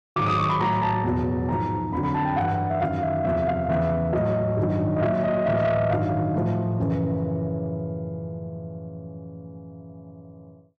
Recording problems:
distorted audio; soft clipping, signal-to-distortion ratio 12 dB

